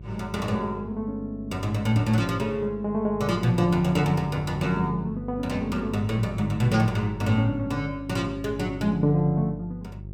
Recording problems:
hum; 50 Hz, harmonics up to 400 Hz, SNR 13 dB

